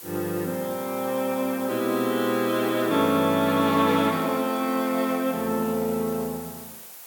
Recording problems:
hiss; SNR 15 dB

